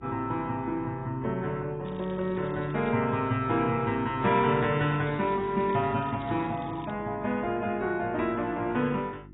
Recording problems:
lossy compression; AAC, log-spectral distance 4 dB, nothing above 3.4 kHz
hum; 50 Hz, harmonics up to 350 Hz, SNR 20 dB
crackling; from 2 to 3 s and from 4.5 to 7 s; loose cable, SNR 27 dB

